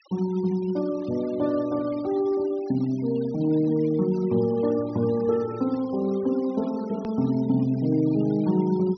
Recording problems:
low-pass filter; nothing above 6 kHz
denoising artefacts; signal-to-artefact ratio 24 dB
hard cut with a click; at 7 s

